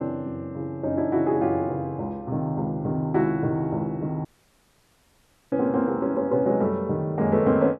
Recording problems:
audio cutting out; at 4.5 s for 1.5 s

